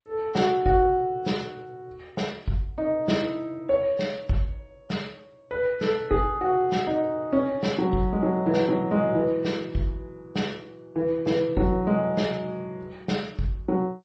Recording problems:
codec artefacts; MP3, then G.722, log-spectral distance 2 dB

